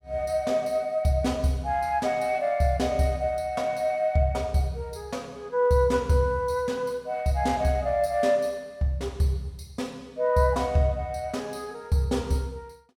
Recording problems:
none

